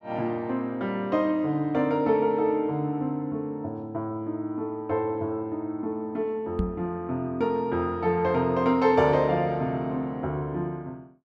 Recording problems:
microphone thump; at 6.5 s; peak +3 dB vs average level

